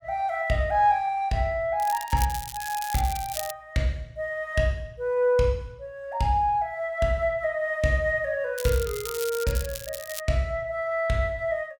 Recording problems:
crackle; from 2 to 3.5 s and from 8.5 to 10 s; loose cable, SNR 10 dB

